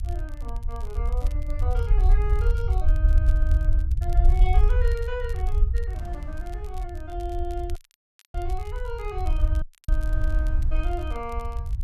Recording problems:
low-frequency rumble; below 62 Hz, SNR -10 dB
wind on the microphone; below 190 Hz, SNR 15 dB
crackling; vinyl, SNR 18 dB
audio cutting out; at 8 s for 0.5 s and at 9.5 s

